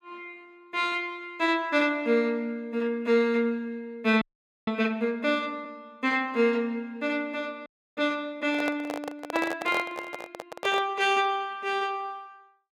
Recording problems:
audio freezing; at 4 s and at 7.5 s
handling noise; from 8.5 to 11 s; peak +1 dB vs average level

